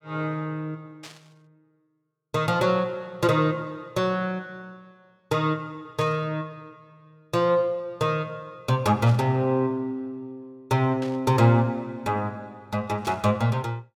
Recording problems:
static burst; 5 times, first at 1 s; peak -11 dB vs average level

